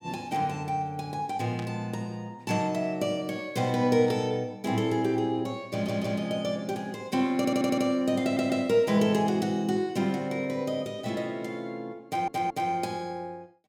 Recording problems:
burst of static; at 1.5 s and at 4 s; peak -11 dB vs average level
audio stuttering; 4 times, first at 5.5 s

